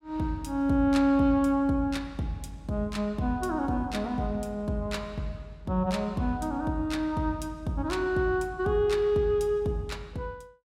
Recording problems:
none

